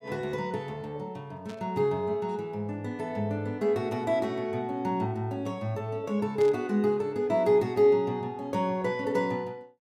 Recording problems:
static burst; at 1.5 s and at 6.5 s; peak -12 dB vs average level

